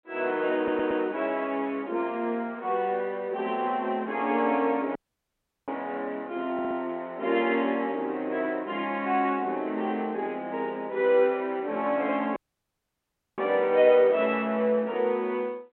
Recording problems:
telephone audio; 240 Hz to 3.4 kHz, G.726
stutter; at 0.5 s and at 6.5 s
dropout; at 5 s for 0.5 s and at 12 s for 1 s

